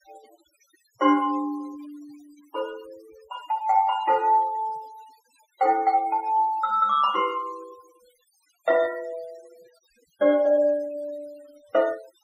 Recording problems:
noise reduction artefacts; signal-to-artefact ratio 24 dB

